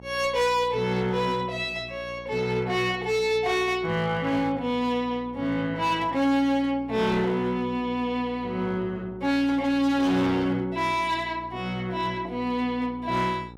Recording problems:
distortion; hard clipping, signal-to-distortion ratio 11 dB
hum; 60 Hz, harmonics up to 1.3 kHz, SNR 19 dB

